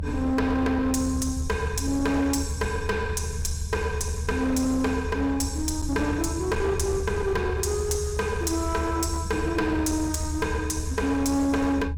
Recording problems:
distorted audio; hard clipping, uneven, signal-to-distortion ratio 11 dB
rumble; below 84 Hz, strongest tone 76 Hz, SNR 5 dB

